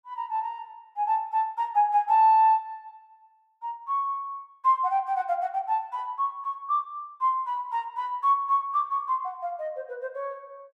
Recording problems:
none

